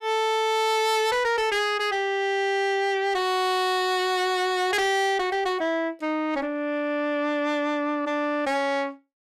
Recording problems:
distorted audio; soft clipping, signal-to-distortion ratio 6 dB

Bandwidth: 14.5 kHz